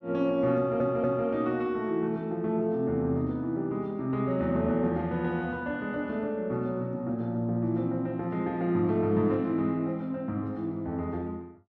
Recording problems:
audio stuttering; at 0.5 s

